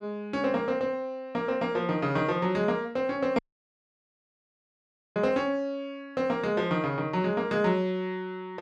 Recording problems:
dropout; at 3.5 s for 2 s

